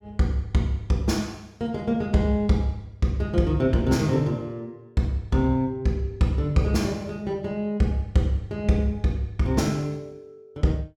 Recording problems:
none

